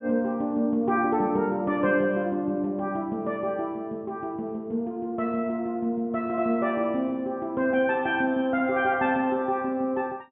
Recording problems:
treble cut off; nothing above 3.5 kHz

